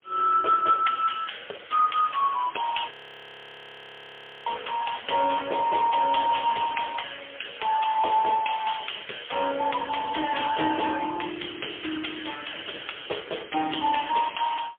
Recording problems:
phone line; 340 Hz to 3.4 kHz, AMR-NB, then MP3
audio freezing; at 3 s for 1.5 s

